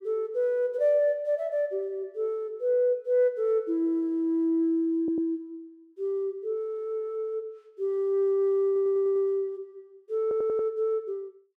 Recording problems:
audio stuttering; at 5 s, at 8.5 s and at 10 s

